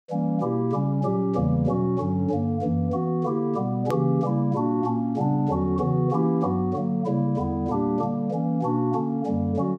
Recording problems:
edit click; at 4 s

